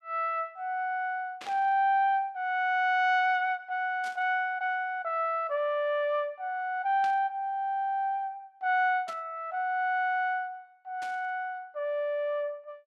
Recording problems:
burst of static; 5 times, first at 1.5 s; peak -10 dB vs average level

